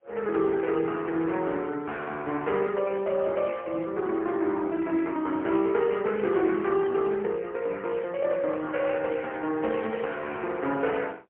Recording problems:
phone line; 240 Hz to 3.4 kHz, AMR-NB, then MP3

